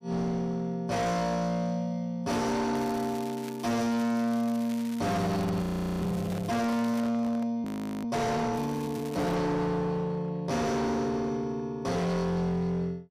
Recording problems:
distorted audio; hard clipping, signal-to-distortion ratio 7 dB
crackling; from 3 to 7 s and at 8.5 s; loose cable, SNR 18 dB
audio freezing; at 5.5 s and at 7.5 s
microphone handling noise; from 6 to 7.5 s; peak -7 dB vs average level

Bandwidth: 15 kHz